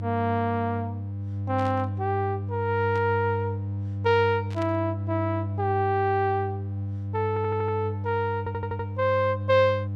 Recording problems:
hum; 50 Hz, harmonics up to 500 Hz, SNR 5 dB
static burst; at 1.5 s, at 3 s and at 4.5 s; peak -11 dB vs average level
audio stuttering; at 7.5 s and at 8.5 s

